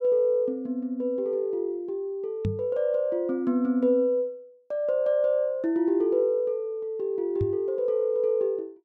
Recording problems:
microphone thump; at 2.5 s and at 7.5 s; peak +1 dB vs average level

